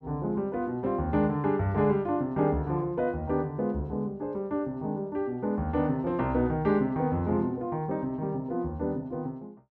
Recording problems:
none

